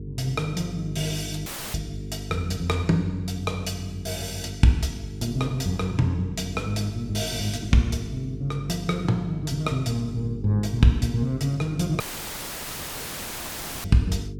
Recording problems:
hum; 50 Hz, harmonics up to 450 Hz, SNR 11 dB
dropout; at 1.5 s and at 12 s for 2 s; filled with static

